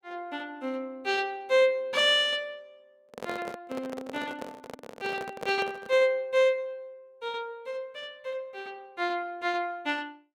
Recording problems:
handling noise; from 3 to 6 s; peak -4 dB vs average level

